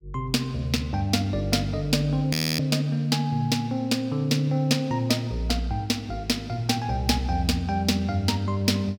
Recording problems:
audio freezing; at 2.5 s

